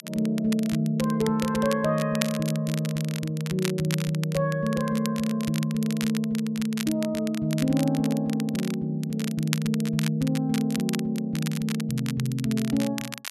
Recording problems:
crackling; vinyl, SNR 11 dB

